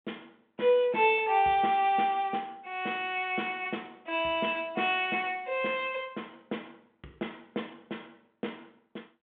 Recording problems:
phone line; 170 Hz to 3.5 kHz, G.726

